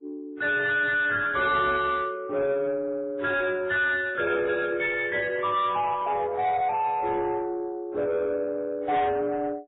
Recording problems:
lossy codec; MP3, then AAC, log-spectral distance 2 dB, nothing above 3.9 kHz
distorted audio; soft clipping, signal-to-distortion ratio 10 dB

